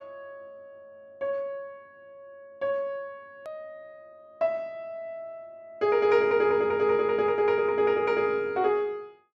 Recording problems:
click at an edit; at 3.5 s

